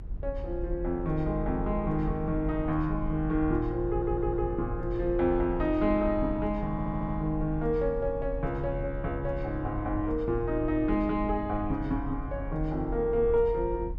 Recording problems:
rumble; below 64 Hz, strongest tone 40 Hz, SNR 9 dB
stutter; at 4 s and at 6.5 s

